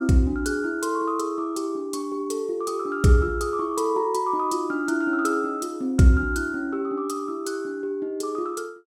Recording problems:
none

